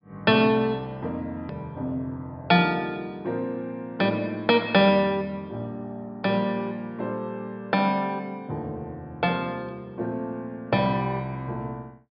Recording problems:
low-pass filter; nothing above 5.5 kHz
hard cut with a click; at 1.5 s

